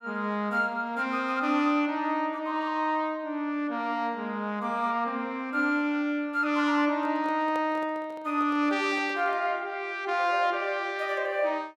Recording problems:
microphone handling noise; from 7 to 9.5 s; peak -8 dB vs average level

